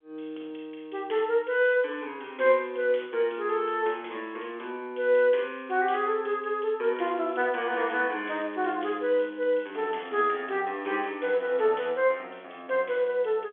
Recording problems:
telephone audio; 300 Hz to 3.5 kHz, G.711
crackle; from 7 to 10 s; loose cable, SNR 28 dB

